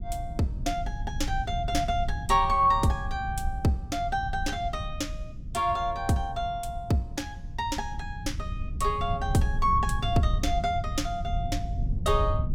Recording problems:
low-frequency rumble; below 96 Hz, SNR 6 dB

